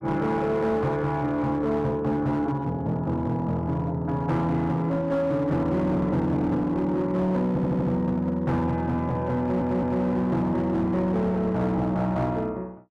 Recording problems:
distorted audio; hard clipping, uneven, signal-to-distortion ratio 12 dB
stutter; at 7.5 s and at 9.5 s

